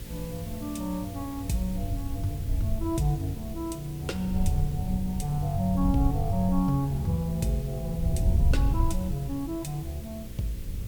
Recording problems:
hum; 60 Hz, harmonics up to 540 Hz, SNR 13 dB
background hiss; slope 0 dB per octave, SNR 17 dB
wind on the microphone; below 88 Hz, SNR 2 dB

